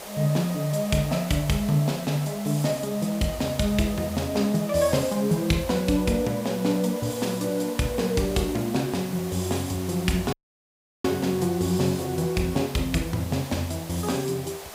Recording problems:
background hiss; SNR 13 dB
audio cutting out; at 10 s for 0.5 s

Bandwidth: 15.5 kHz